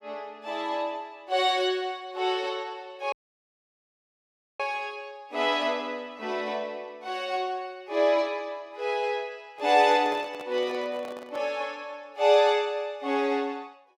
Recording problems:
audio cutting out; at 3 s for 1.5 s
microphone handling noise; from 9.5 to 12 s; peak -9 dB vs average level

